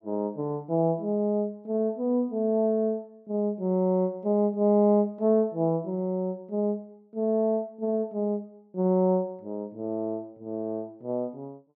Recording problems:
none

